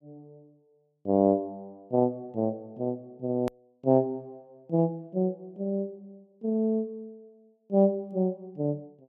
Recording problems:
click at an edit; at 3.5 s

